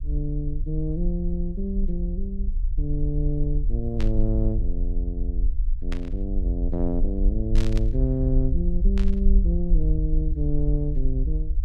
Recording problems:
rumble; below 50 Hz, SNR -2 dB
burst of static; 4 times, first at 4 s; peak -4 dB vs average level

